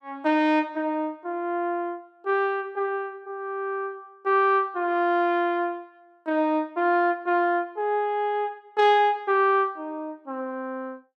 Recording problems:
none

